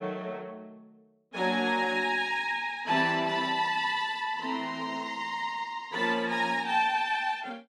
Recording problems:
none

